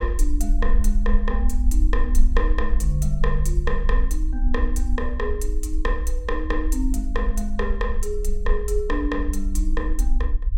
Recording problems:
low-frequency rumble; below 46 Hz, SNR -4 dB

